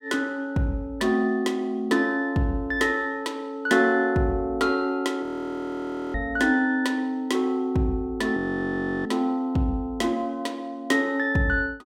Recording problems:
frozen audio; at 5 s for 1 s and at 8.5 s for 0.5 s

